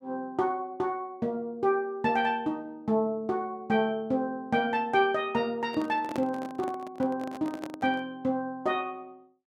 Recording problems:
handling noise; from 5.5 to 8 s; peak -2 dB vs average level

